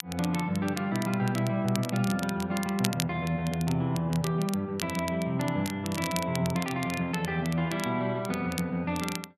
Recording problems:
crackling; vinyl, SNR 11 dB

